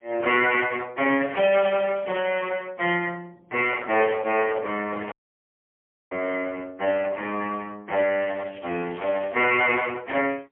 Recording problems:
telephone audio; 320 Hz to 3.3 kHz, AMR-NB, then MP3
crackle; at 1.5 s and from 8 to 9.5 s; loose cable, SNR 25 dB
microphone handling noise; from 3.5 to 5 s; peak -6 dB vs average level
dropout; at 5 s for 1 s

